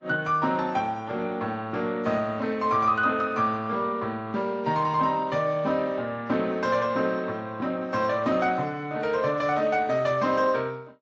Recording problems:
lossy compression; Speex, then AAC, log-spectral distance 3 dB

